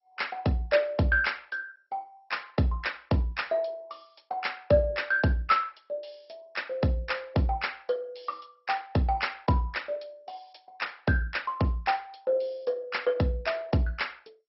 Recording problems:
codec artefacts; MP2, log-spectral distance 5 dB, nothing above 5.5 kHz

